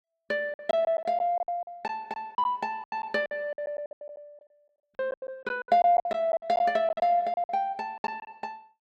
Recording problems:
lost packets; 17% of the sound replaced, filled with silence

